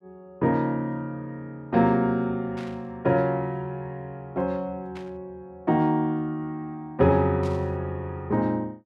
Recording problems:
static burst; at 2.5 s, at 5 s and at 7.5 s; peak -13 dB vs average level

